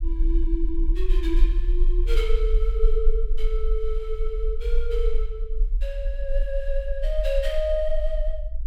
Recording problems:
low-frequency rumble; below 40 Hz, SNR -4 dB

